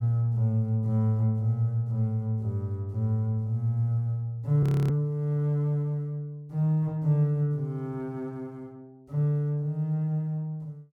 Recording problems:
audio freezing; at 4.5 s

